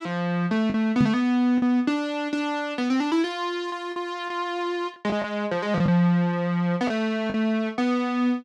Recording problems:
lost packets; 4% of the sound replaced, filled with the last packet
knock on the microphone; at 1 s; peak +6 dB vs average level

